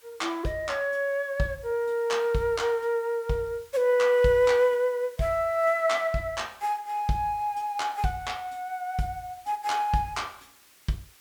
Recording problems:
background hiss; slope 0 dB per octave, SNR 27 dB

